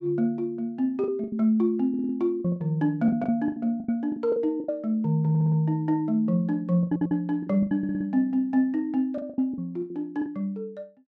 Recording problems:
packet loss; 11% of the sound replaced, filled with the last packet
stutter; 4 times, first at 2 s

